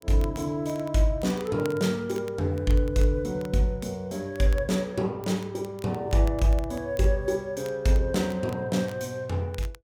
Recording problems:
crackle; vinyl, SNR 24 dB

